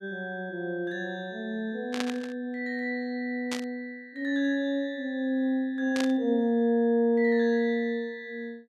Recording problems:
static burst; at 2 s, at 3.5 s and at 6 s; peak 0 dB vs average level

